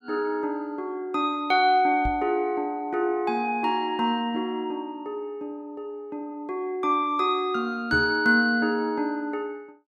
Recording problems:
knock on the microphone; at 2 s and at 8 s; peak -3 dB vs average level

